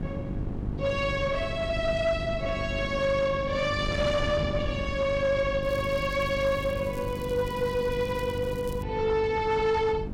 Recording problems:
distorted audio; soft clipping, signal-to-distortion ratio 12 dB
mains hum; 50 Hz, harmonics up to 850 Hz, SNR 11 dB
wind on the microphone; below 230 Hz, SNR 9 dB
crackle; from 5.5 to 9 s; loose cable, SNR 24 dB

